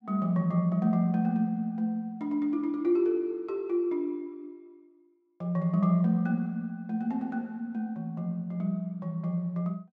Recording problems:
none

